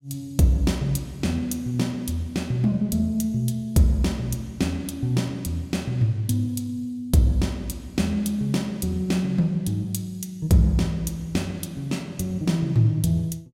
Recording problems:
none

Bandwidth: 16 kHz